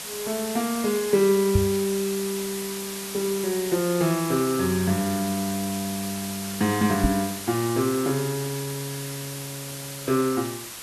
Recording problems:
hiss; slope 0 dB per octave, SNR 7 dB
microphone bump; at 1.5 s and at 7 s; peak +7 dB vs average level

